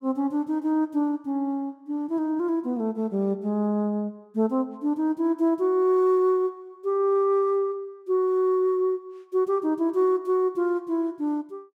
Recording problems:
none

